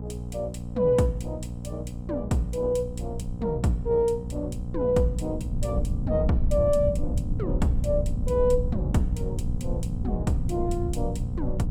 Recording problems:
hum; 60 Hz, harmonics up to 780 Hz, SNR 7 dB
rumble; below 100 Hz, SNR 5 dB

